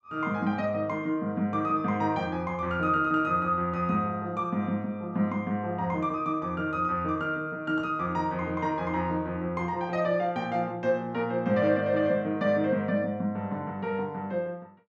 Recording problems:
none

